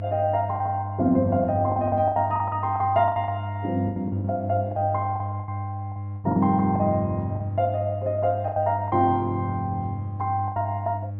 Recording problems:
hum; 50 Hz, harmonics up to 500 Hz, SNR 7 dB
packet loss; 10% of the sound replaced, filled with the last packet

